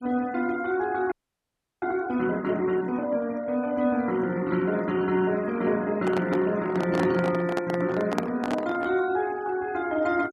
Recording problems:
noise reduction artefacts; signal-to-artefact ratio 22 dB
audio freezing; at 1 s for 0.5 s
microphone handling noise; from 6 to 9 s; peak +3 dB vs average level

